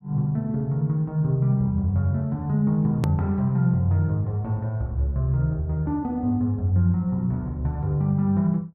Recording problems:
hard cut with a click; at 3 s

